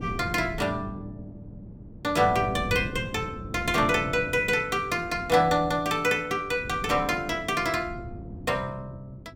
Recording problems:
wind noise; below 240 Hz, SNR 14 dB

